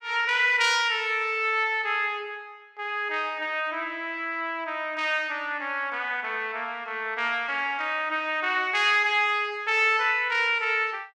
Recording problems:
none

